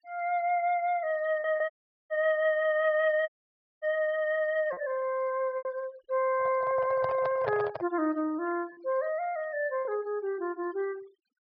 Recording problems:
treble missing; nothing above 5.5 kHz
denoising artefacts; signal-to-artefact ratio 24 dB
packet loss; 3% of the sound replaced, filled with repeated pitch periods
dropout; at 1.5 s and at 3.5 s for 0.5 s
handling noise; from 6.5 to 8 s; peak -1 dB vs average level

